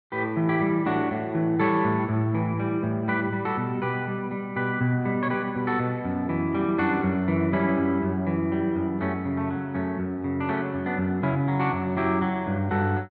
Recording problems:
none

